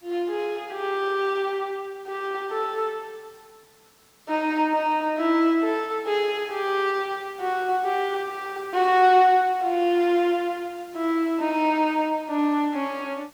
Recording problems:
hiss; slope -1 dB per octave, SNR 29 dB

